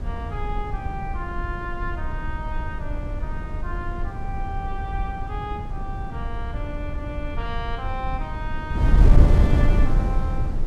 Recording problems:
wind on the microphone; below 88 Hz, SNR -8 dB

